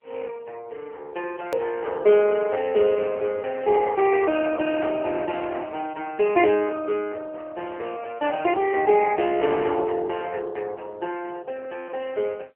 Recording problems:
telephone audio; 340 Hz to 3.1 kHz, AMR-NB
click at an edit; at 1.5 s

